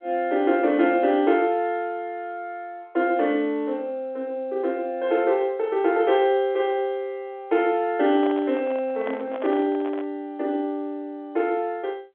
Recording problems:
phone line; 240 Hz to 3.6 kHz, G.711
microphone handling noise; from 8 to 10 s; peak -6 dB vs average level

